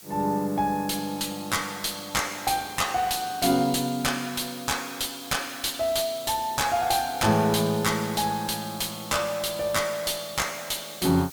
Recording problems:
distortion; soft clipping, signal-to-distortion ratio 10 dB
hiss; slope +1 dB per octave, SNR 16 dB

